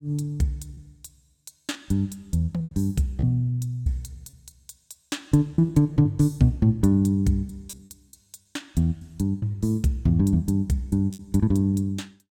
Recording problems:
packet loss; 7% of the sound replaced, filled with repeated pitch periods

